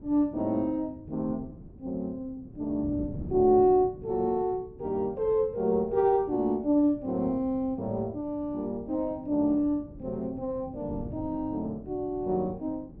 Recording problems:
wind noise; below 250 Hz, SNR 17 dB

